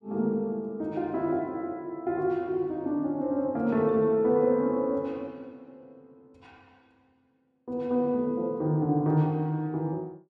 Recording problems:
none

